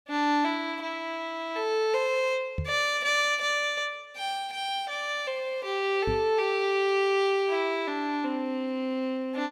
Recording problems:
microphone bump; at 2.5 s and at 6 s; peak 0 dB vs average level

